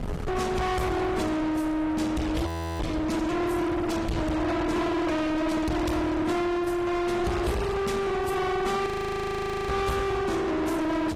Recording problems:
codec artefacts; AAC, log-spectral distance 3 dB
distortion; soft clipping, signal-to-distortion ratio 6 dB
wind noise; below 1 kHz, SNR 8 dB
audio freezing; at 2.5 s and at 9 s for 1 s

